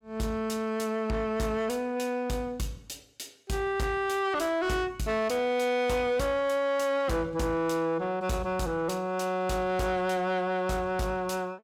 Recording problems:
distorted audio; soft clipping, signal-to-distortion ratio 10 dB

